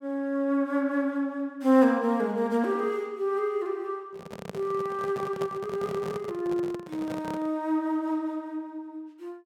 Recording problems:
microphone handling noise; from 4 to 7.5 s; peak -4 dB vs average level

